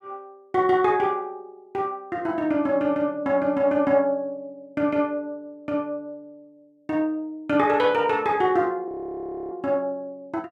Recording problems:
audio freezing; at 9 s for 0.5 s

